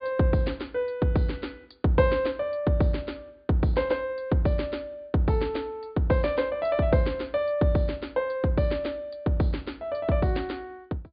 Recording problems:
treble missing; nothing above 4.8 kHz

